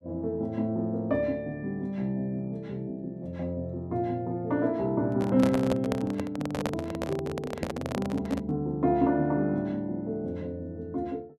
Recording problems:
handling noise; from 5 to 8.5 s; peak +3 dB vs average level

